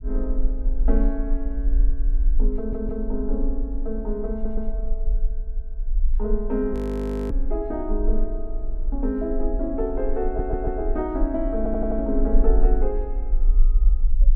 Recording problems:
rumble; below 40 Hz, strongest tone 24 Hz, SNR -1 dB
stutter; 4 times, first at 2.5 s
frozen audio; at 6.5 s for 0.5 s

